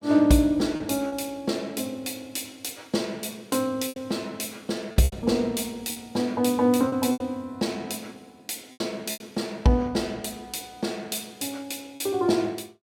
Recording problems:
lost packets; 5% of the sound replaced, filled with repeated pitch periods

